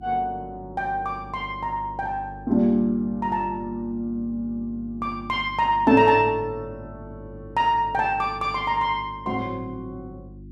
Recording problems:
electrical hum; 50 Hz, harmonics up to 350 Hz, SNR 18 dB

